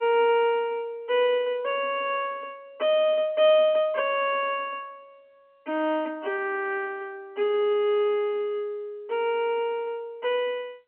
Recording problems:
phone line; 220 Hz to 3.3 kHz, G.711

